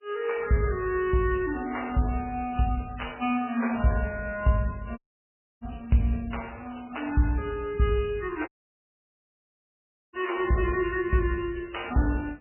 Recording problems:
lossy compression; AAC, then MP3, log-spectral distance 6 dB, nothing above 2.9 kHz
audio cutting out; at 5 s for 0.5 s and at 8.5 s for 1.5 s

